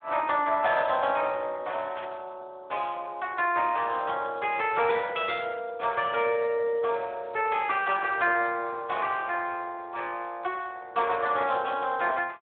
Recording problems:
telephone audio; 320 Hz to 3.4 kHz, Speex
static burst; at 2 s; peak -12 dB vs average level

